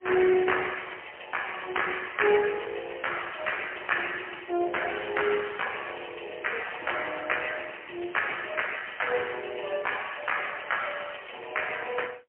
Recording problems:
phone line; 320 Hz to 3.1 kHz, AMR-NB, then MP3

